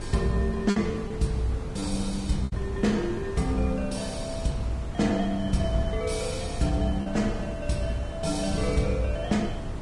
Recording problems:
codec artefacts; Vorbis, log-spectral distance 3 dB, nothing above 10.1 kHz
hiss; slope -6 dB per octave, SNR 16 dB
wind on the microphone; below 190 Hz, SNR 7 dB
packet loss; 2% of the sound replaced, filled with repeated pitch periods

